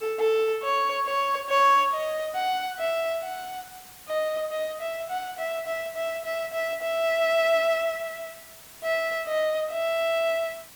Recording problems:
hiss; slope 0 dB per octave, SNR 19 dB

